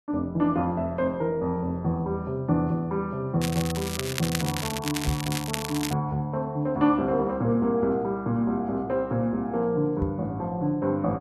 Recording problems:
crackle; from 3.5 to 6 s; loose cable, SNR 6 dB
microphone bump; at 5 s and at 10 s; peak +1 dB vs average level

